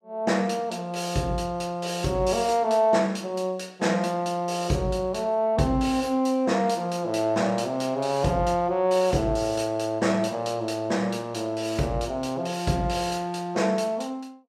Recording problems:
none

